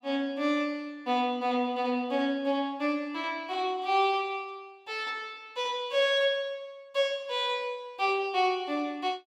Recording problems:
none

